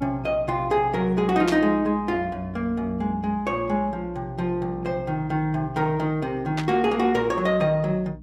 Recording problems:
hum; 60 Hz, harmonics up to 300 Hz, SNR 19 dB
static burst; at 1.5 s and at 6.5 s; peak -3 dB vs average level

